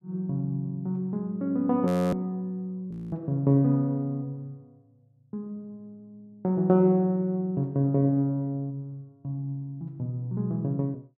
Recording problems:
audio freezing; at 2 s and at 3 s

